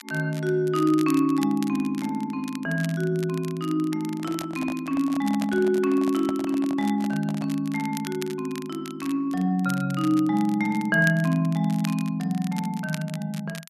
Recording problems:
crackle; vinyl, SNR 18 dB
handling noise; from 4 to 7.5 s; peak -5 dB vs average level

